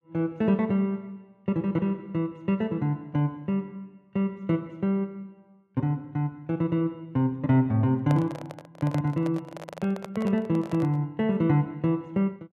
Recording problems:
handling noise; from 8 to 11 s; peak -3 dB vs average level

